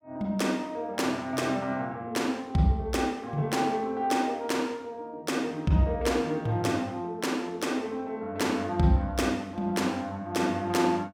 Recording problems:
none

